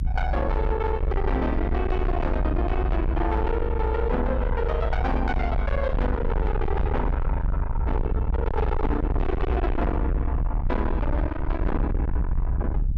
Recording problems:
distorted audio; soft clipping, signal-to-distortion ratio 6 dB
low-frequency rumble; below 94 Hz, SNR -1 dB

